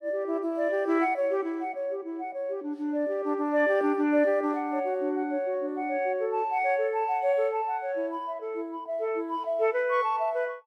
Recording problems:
none

